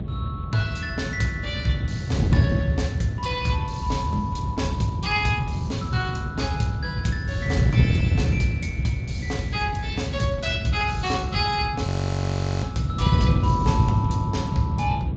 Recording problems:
codec artefacts; Speex, log-spectral distance 2 dB, nothing above 7.3 kHz
electrical hum; 50 Hz, harmonics up to 850 Hz, SNR 19 dB
low-frequency rumble; below 96 Hz, SNR 9 dB
wind on the microphone; below 180 Hz, SNR -1 dB
frozen audio; at 12 s for 1 s

